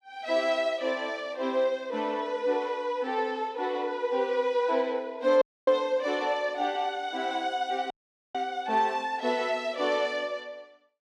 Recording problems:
dropout; at 5.5 s and at 8 s

